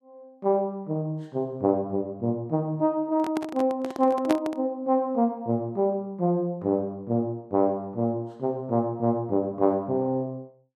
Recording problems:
microphone handling noise; from 3 to 4.5 s; peak +2 dB vs average level

